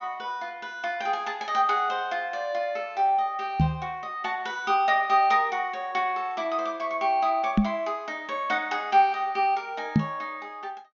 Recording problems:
treble missing; nothing above 6.9 kHz
microphone thump; at 3.5 s, at 7.5 s and at 10 s; peak +9 dB vs average level

